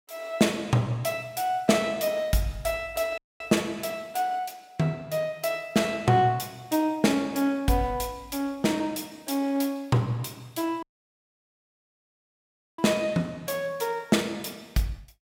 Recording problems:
audio cutting out; at 3 s and at 11 s for 2 s

